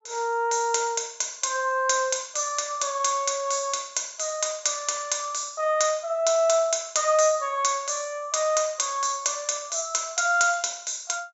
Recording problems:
low-pass filter; nothing above 8 kHz

